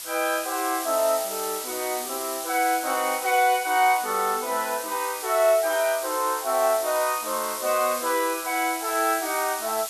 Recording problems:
background hiss; slope +3 dB per octave, SNR 7 dB

